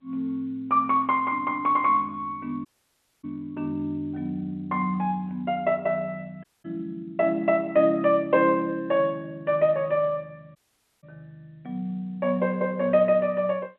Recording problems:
telephone audio; 220 Hz to 3.4 kHz, G.711
audio cutting out; at 2.5 s for 0.5 s, at 6.5 s and at 11 s

